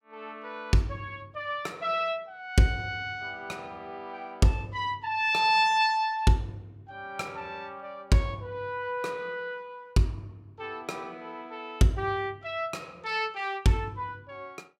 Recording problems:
none

